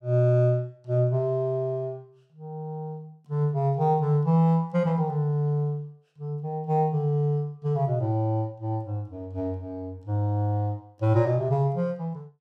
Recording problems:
none

